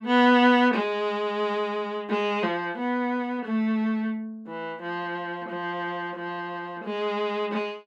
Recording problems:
none

